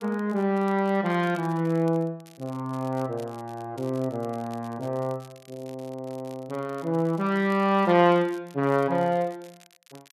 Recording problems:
crackling; vinyl, SNR 27 dB

